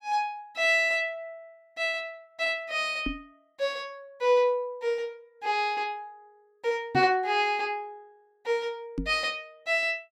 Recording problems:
knock on the microphone; at 3 s, at 7 s and at 9 s; peak 0 dB vs average level

